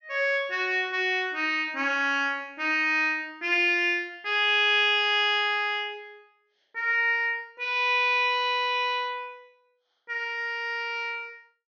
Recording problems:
low-pass filter; nothing above 6.6 kHz

